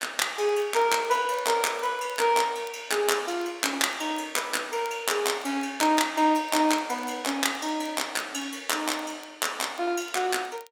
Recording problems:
crackling; vinyl, SNR 28 dB

